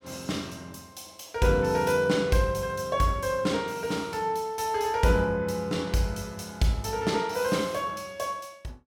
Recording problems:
none

